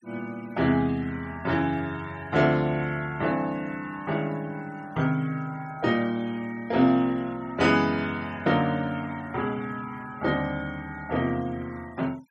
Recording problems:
denoising artefacts; signal-to-artefact ratio 24 dB

